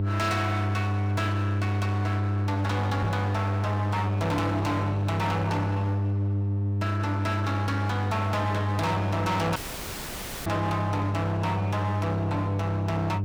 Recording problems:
distortion; hard clipping, signal-to-distortion ratio 8 dB
hum; 50 Hz, harmonics up to 500 Hz, SNR -1 dB
knock on the microphone; at 3 s; peak +4 dB vs average level
audio cutting out; at 9.5 s for 1 s; filled with static

